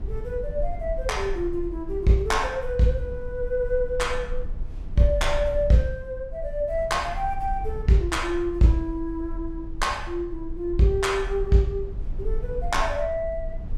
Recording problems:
low-frequency rumble; below 50 Hz, strongest tone 22 Hz, SNR 10 dB

